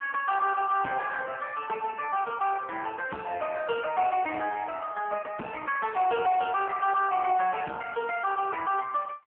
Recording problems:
telephone audio; 280 Hz to 3.1 kHz, AMR-NB
distortion; soft clipping, signal-to-distortion ratio 11 dB

